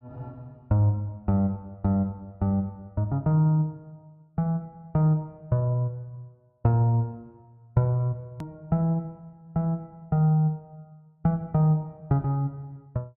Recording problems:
edit click; at 8.5 s

